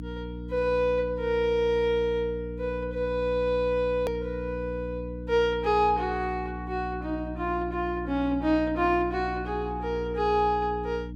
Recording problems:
hum; 60 Hz, harmonics up to 300 Hz, SNR 10 dB
click at an edit; at 4 s

